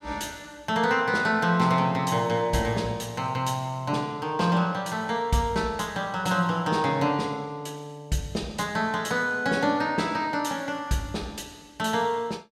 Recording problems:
none

